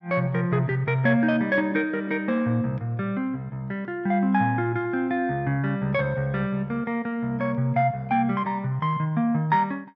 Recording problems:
none

